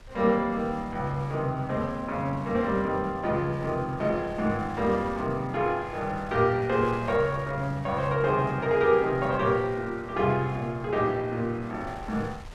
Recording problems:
wind on the microphone; below 500 Hz, SNR 21 dB

